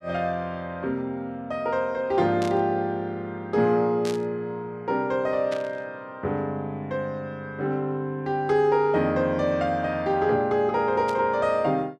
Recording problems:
static burst; 4 times, first at 2.5 s; peak -7 dB vs average level

